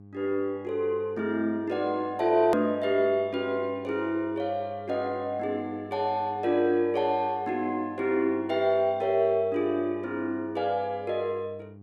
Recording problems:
mains hum; 50 Hz, harmonics up to 800 Hz, SNR 20 dB
edit click; at 2.5 s

